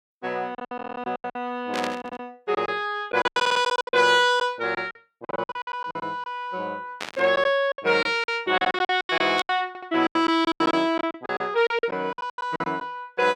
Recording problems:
lost packets; 17% of the sound replaced, filled with silence
stutter; 4 times, first at 1 s
static burst; 4 times, first at 1.5 s; peak -3 dB vs average level

